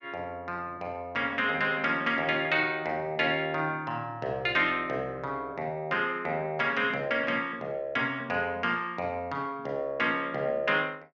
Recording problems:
none

